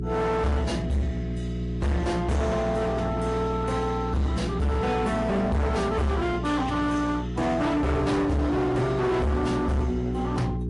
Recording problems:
codec artefacts; Vorbis, then MP3, log-spectral distance 2 dB, nothing above 11 kHz
distorted audio; hard clipping, signal-to-distortion ratio 6 dB
electrical hum; 60 Hz, harmonics up to 660 Hz, SNR 6 dB

